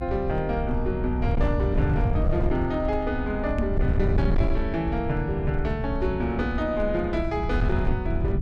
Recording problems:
distorted audio; hard clipping, uneven, signal-to-distortion ratio 11 dB
low-frequency rumble; below 110 Hz, SNR 1 dB
microphone bump; at 3.5 s; peak +5 dB vs average level

